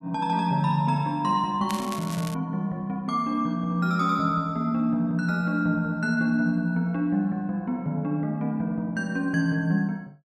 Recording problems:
crackling; at 1.5 s; loose cable, SNR 14 dB

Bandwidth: 12.5 kHz